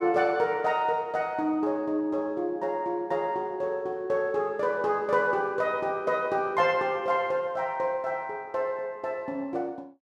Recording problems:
none

